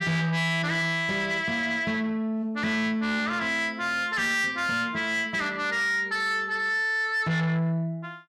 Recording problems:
distorted audio; soft clipping, signal-to-distortion ratio 11 dB

